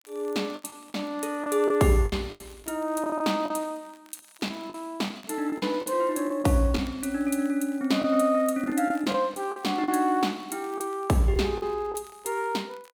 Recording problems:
crackle; vinyl, SNR 30 dB
lost packets; 9% of the sound replaced, filled with the last packet

